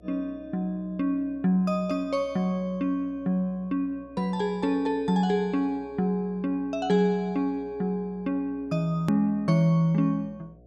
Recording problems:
mains hum; 60 Hz, harmonics up to 720 Hz, SNR 27 dB
edit click; at 9 s

